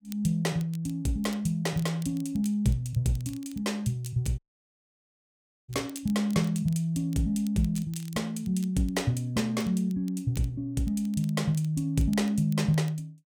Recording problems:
crackling; vinyl, SNR 24 dB
audio cutting out; at 4.5 s for 1.5 s

